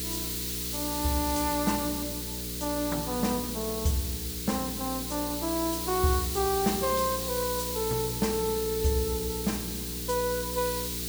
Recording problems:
mains hum; 60 Hz, harmonics up to 480 Hz, SNR 9 dB
hiss; slope +5 dB per octave, SNR 2 dB

